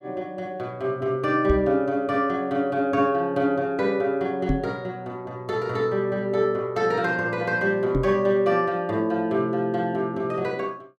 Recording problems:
knock on the microphone; at 1.5 s, at 4.5 s and at 8 s; peak +5 dB vs average level

